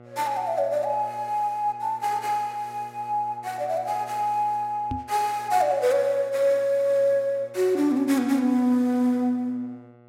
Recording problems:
mains hum; 60 Hz, harmonics up to 2.2 kHz, SNR 25 dB
microphone thump; at 5 s; peak -4 dB vs average level

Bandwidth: 16 kHz